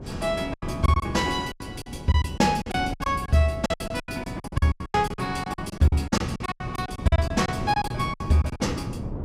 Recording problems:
wind on the microphone; below 300 Hz, SNR 11 dB
packet loss; 20% of the sound replaced, filled with silence

